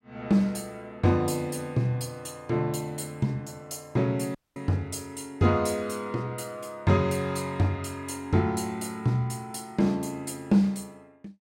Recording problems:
audio cutting out; at 4.5 s

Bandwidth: 16 kHz